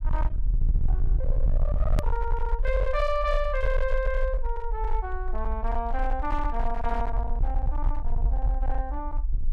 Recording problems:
distortion; hard clipping, signal-to-distortion ratio 7 dB
rumble; below 50 Hz, SNR -2 dB
click at an edit; at 2 s

